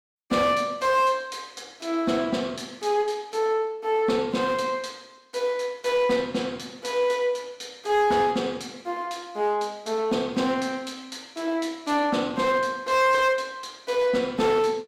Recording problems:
distorted audio; hard clipping, uneven, signal-to-distortion ratio 12 dB

